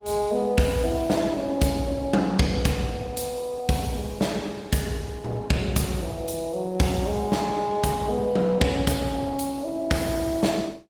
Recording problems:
lossy codec; Opus, log-spectral distance 4 dB, nothing above 19 kHz

